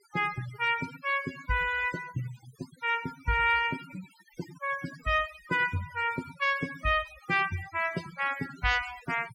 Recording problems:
denoising artefacts; signal-to-artefact ratio 15 dB

